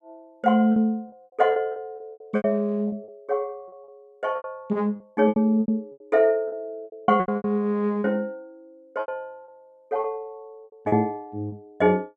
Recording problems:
lost packets; 14% of the sound replaced, filled with repeated pitch periods

